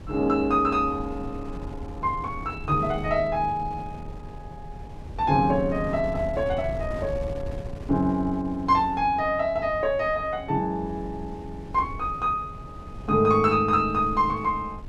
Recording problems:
wind on the microphone; below 160 Hz, SNR 14 dB

